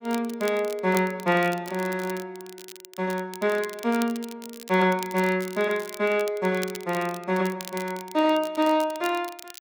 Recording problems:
crackling; vinyl, SNR 17 dB

